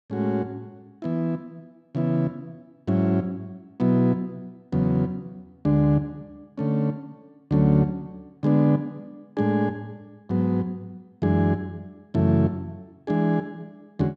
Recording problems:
none

